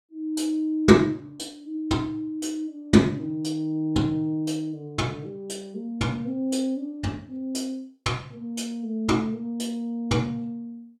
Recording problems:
none

